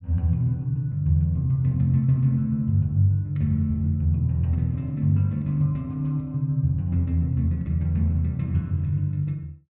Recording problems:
none

